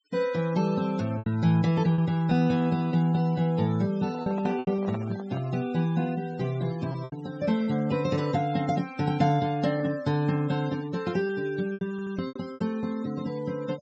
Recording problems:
low-pass filter; nothing above 8 kHz
denoising artefacts; signal-to-artefact ratio 21 dB
lost packets; 5% of the sound replaced, filled with repeated pitch periods
microphone handling noise; from 4 to 5.5 s; peak -7 dB vs average level
audio stuttering; at 12 s

